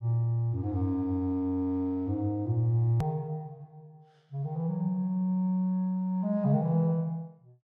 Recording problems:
hard cut with a click; at 3 s

